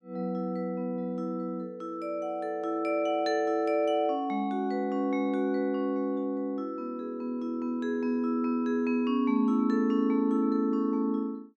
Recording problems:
none

